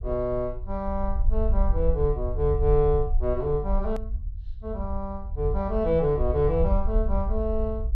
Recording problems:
rumble; below 60 Hz, SNR 3 dB
edit click; at 4 s

